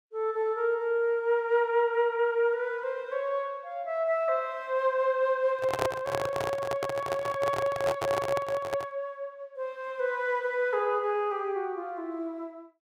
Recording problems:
microphone handling noise; from 5.5 to 9 s; peak +3 dB vs average level

